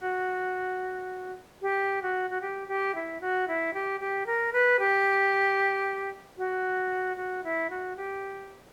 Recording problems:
background hiss; slope -6 dB per octave, SNR 27 dB

